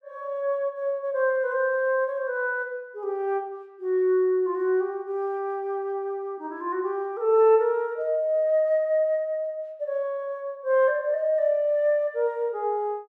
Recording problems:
none

